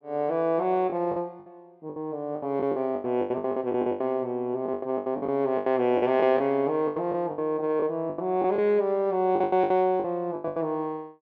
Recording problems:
lost packets; 16% of the sound replaced, filled with the last packet

